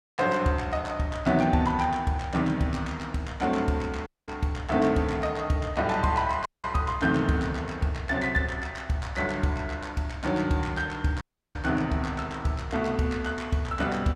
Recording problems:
dropout; at 4 s, at 6.5 s and at 11 s

